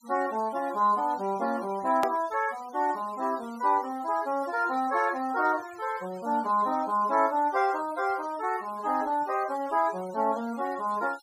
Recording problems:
denoising artefacts; signal-to-artefact ratio 22 dB
click at an edit; at 2 s

